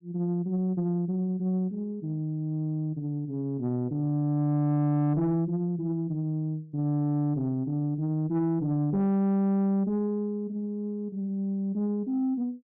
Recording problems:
distorted audio; soft clipping, signal-to-distortion ratio 11 dB

